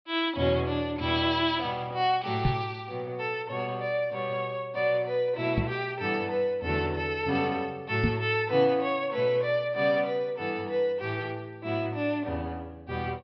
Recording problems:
treble missing; nothing above 5.5 kHz
microphone bump; at 2.5 s, at 5.5 s and at 8 s; peak +6 dB vs average level

